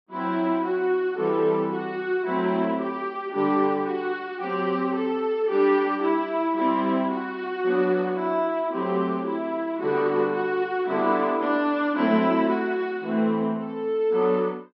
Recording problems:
treble missing; nothing above 5.8 kHz

